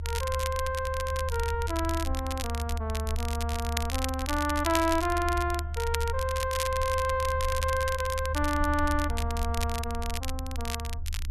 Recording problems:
rumble; below 78 Hz, strongest tone 76 Hz, SNR 4 dB
crackle; vinyl, SNR 7 dB

